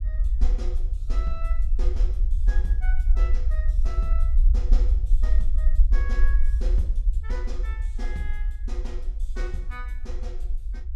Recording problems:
rumble; below 48 Hz, SNR -14 dB

